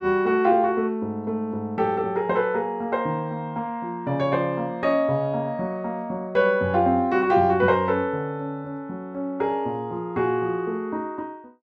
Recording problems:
none

